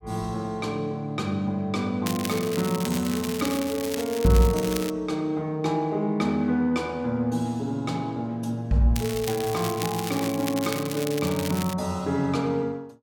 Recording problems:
crackle; from 2 to 5 s and from 9 to 12 s; loose cable, SNR 9 dB

